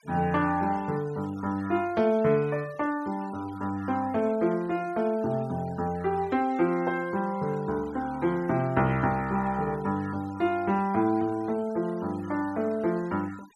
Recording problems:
noise reduction artefacts; signal-to-artefact ratio 23 dB

